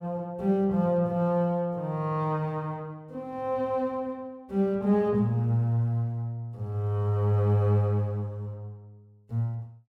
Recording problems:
none

